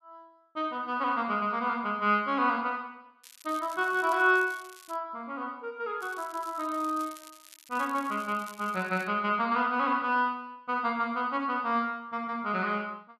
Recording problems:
crackle; from 3 to 5 s and from 6 to 9 s; loose cable, SNR 21 dB

